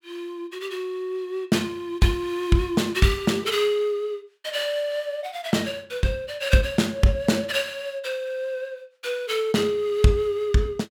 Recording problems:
none

